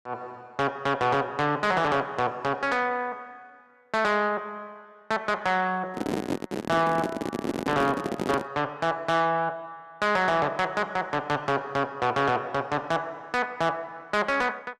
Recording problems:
distorted audio; soft clipping, signal-to-distortion ratio 10 dB
handling noise; from 6 to 8.5 s; peak +2 dB vs average level

